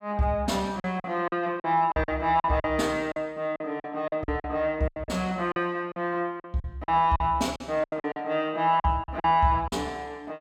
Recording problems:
packet loss; 12% of the sound replaced, filled with silence

